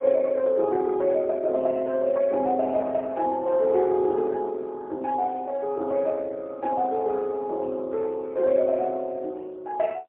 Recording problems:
phone line; 280 Hz to 2.6 kHz, AMR-NB, then MP3

